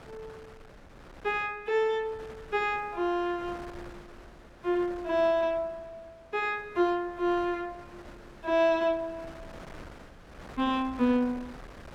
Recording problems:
wind noise; below 1.3 kHz, SNR 20 dB

